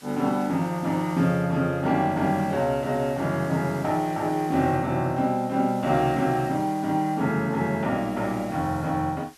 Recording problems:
hiss; slope +1 dB per octave, SNR 23 dB

